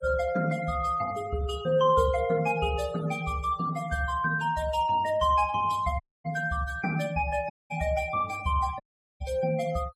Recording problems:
denoising artefacts; signal-to-artefact ratio 18 dB
audio cutting out; at 6 s, at 7.5 s and at 9 s

